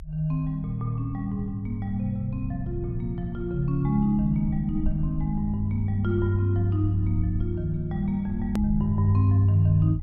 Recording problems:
rumble; below 66 Hz, SNR 11 dB
hard cut with a click; at 8.5 s

